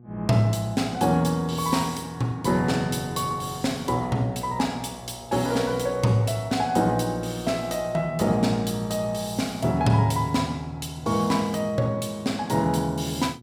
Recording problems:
hum; 60 Hz, harmonics up to 720 Hz, SNR 22 dB

